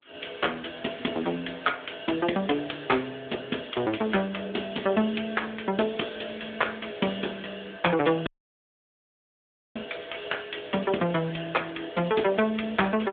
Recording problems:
phone line; 190 Hz to 3.5 kHz, AMR-NB
dropout; at 8.5 s for 1.5 s

